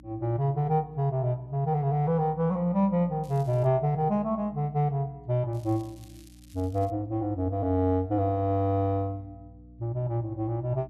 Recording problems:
mains hum; 60 Hz, harmonics up to 300 Hz, SNR 23 dB
crackle; at 3 s and from 5.5 to 7 s; loose cable, SNR 29 dB

